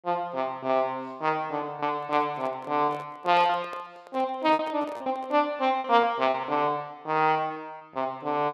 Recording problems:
packet loss; 8% of the sound replaced, filled with repeated pitch periods
handling noise; from 2 to 5.5 s; peak -12 dB vs average level

